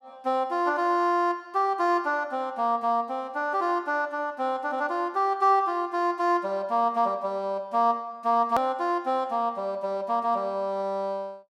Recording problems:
edit click; at 8.5 s

